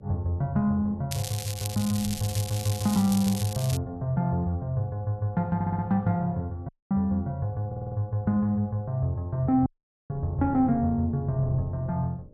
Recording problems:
electrical hum; 60 Hz, harmonics up to 600 Hz, SNR 30 dB
wind on the microphone; below 180 Hz, SNR 19 dB
crackling; from 1 to 4 s; loose cable, SNR 9 dB
audio stuttering; at 5.5 s and at 7.5 s
audio cutting out; at 6.5 s and at 9.5 s

